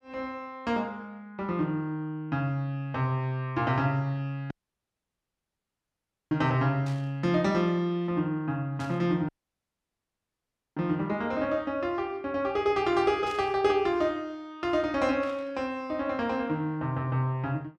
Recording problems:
dropout; at 4.5 s for 2 s and at 9.5 s for 1.5 s
burst of static; 4 times, first at 7 s; peak -12 dB vs average level

